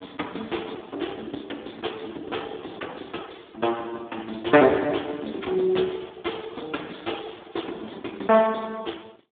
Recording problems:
phone line; 240 Hz to 3.6 kHz, Speex

